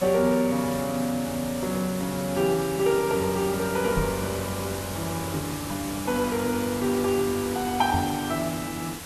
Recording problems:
background hiss; slope -2 dB per octave, SNR 9 dB
microphone bump; at 4 s and at 8 s; peak +2 dB vs average level

